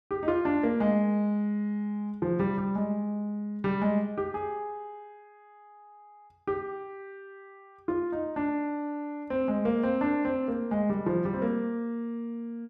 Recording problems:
none

